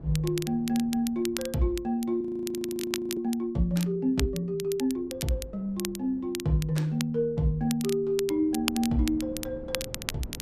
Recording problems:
wind noise; below 310 Hz, SNR 20 dB
crackling; vinyl, SNR 10 dB
frozen audio; at 2 s for 1 s

